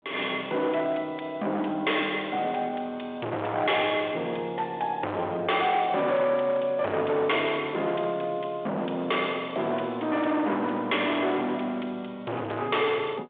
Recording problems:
phone line; 280 Hz to 3.5 kHz, G.726
distorted audio; hard clipping, signal-to-distortion ratio 6 dB

